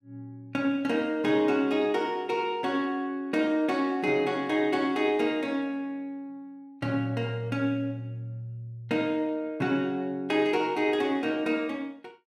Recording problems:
none

